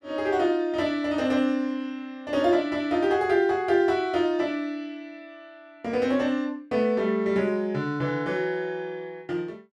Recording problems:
none

